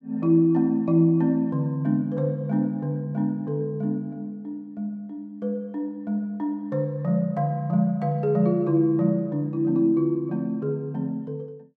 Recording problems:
none

